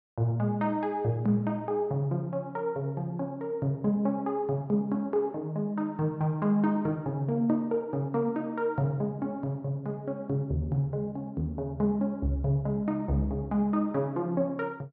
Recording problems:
treble missing; nothing above 5.7 kHz

